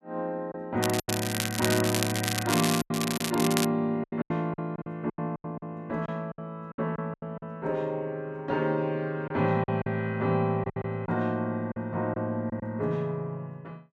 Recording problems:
packet loss; 9% of the sound replaced, filled with silence
crackle; from 1 to 3.5 s; loose cable, SNR 2 dB

